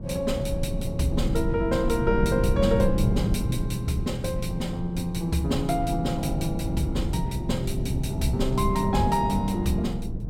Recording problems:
electrical hum; 60 Hz, harmonics up to 1.4 kHz, SNR 26 dB
wind noise; below 170 Hz, SNR 3 dB

